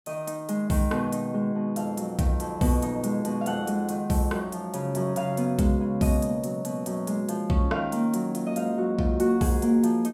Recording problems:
none

